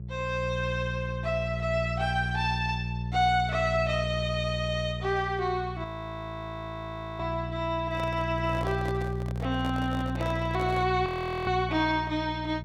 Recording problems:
hum; 60 Hz, harmonics up to 420 Hz, SNR 5 dB
audio freezing; at 6 s for 1.5 s and at 11 s
handling noise; from 8 to 11 s; peak -4 dB vs average level

